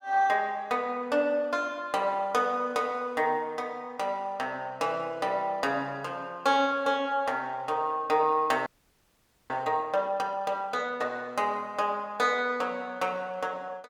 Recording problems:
audio freezing; at 8.5 s for 1 s

